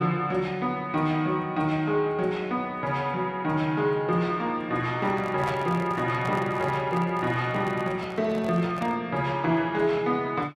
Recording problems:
microphone handling noise; from 5 to 9 s; peak -4 dB vs average level

